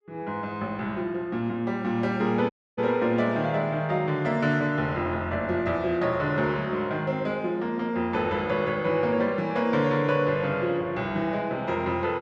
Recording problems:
dropout; at 2.5 s

